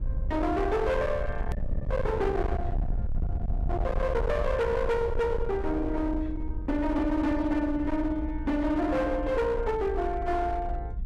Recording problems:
distortion; hard clipping, uneven, signal-to-distortion ratio 7 dB
rumble; below 100 Hz, SNR 5 dB
edit click; at 1.5 s

